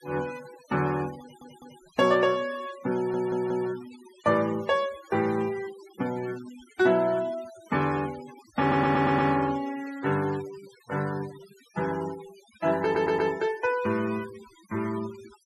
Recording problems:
noise reduction artefacts; signal-to-artefact ratio 19 dB
audio stuttering; 4 times, first at 1 s

